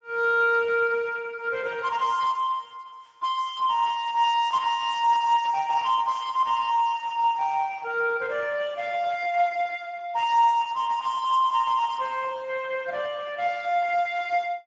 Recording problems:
lossy codec; Speex, log-spectral distance 3 dB

